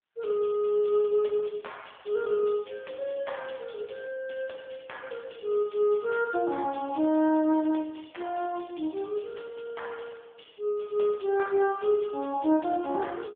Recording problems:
telephone audio; 220 Hz to 3.4 kHz, AMR-NB

